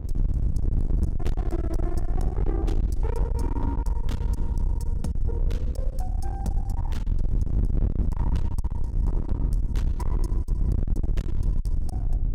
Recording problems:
distorted audio; hard clipping, uneven, signal-to-distortion ratio 6 dB
wind on the microphone; below 76 Hz, SNR -9 dB

